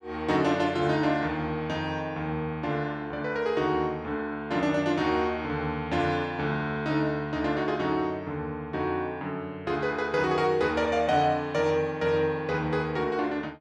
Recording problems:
none

